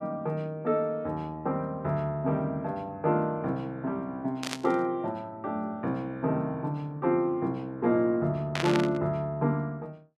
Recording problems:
burst of static; at 4.5 s and at 8.5 s; peak +2 dB vs average level

